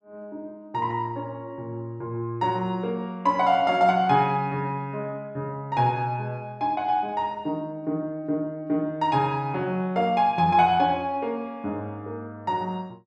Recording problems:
none

